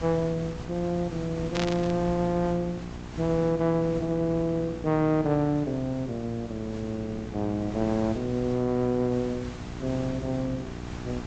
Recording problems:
treble cut off; nothing above 8 kHz
mains hum; 60 Hz, harmonics up to 2.3 kHz, SNR 13 dB
hiss; SNR 14 dB
static burst; at 1.5 s; peak -1 dB vs average level

